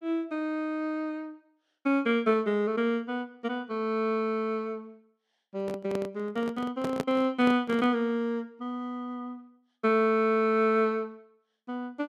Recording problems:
microphone handling noise; from 5.5 to 8 s; peak +1 dB vs average level

